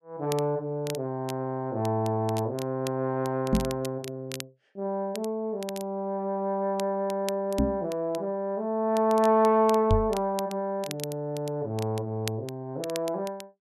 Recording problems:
crackle; vinyl, SNR 16 dB
microphone bump; at 3.5 s, at 7.5 s and at 10 s; peak +7 dB vs average level

